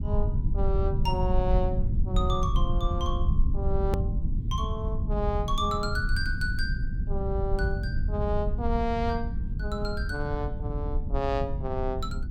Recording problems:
low-frequency rumble; below 90 Hz, SNR -2 dB
click at an edit; at 4 s

